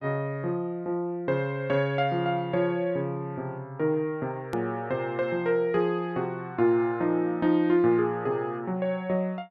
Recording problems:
hard cut with a click; at 4.5 s

